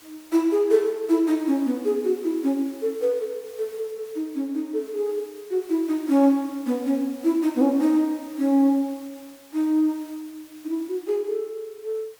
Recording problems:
background hiss; slope -1 dB per octave, SNR 25 dB

